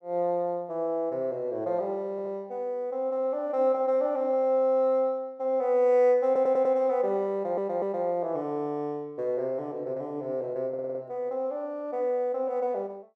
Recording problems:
audio stuttering; 4 times, first at 2 s

